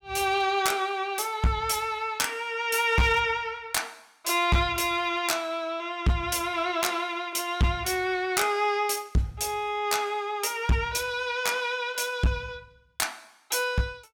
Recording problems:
distortion; hard clipping, uneven, signal-to-distortion ratio 10 dB

